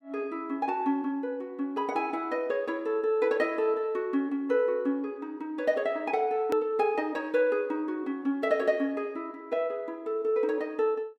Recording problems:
hard cut with a click; at 6.5 s

